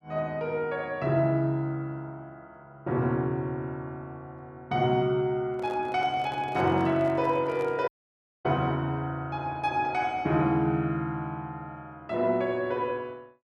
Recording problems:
microphone handling noise; from 5.5 to 8 s; peak -9 dB vs average level
audio cutting out; at 8 s for 0.5 s

